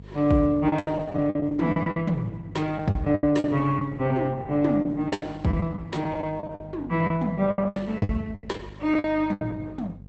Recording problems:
lossy codec; Opus, log-spectral distance 2 dB, nothing above 8.2 kHz
hum; 50 Hz, harmonics up to 500 Hz, SNR 19 dB
lost packets; 15% of the sound replaced, filled with the last packet

